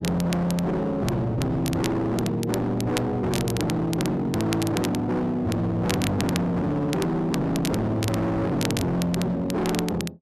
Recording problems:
distortion; hard clipping, signal-to-distortion ratio 6 dB
crackle; vinyl, SNR 11 dB

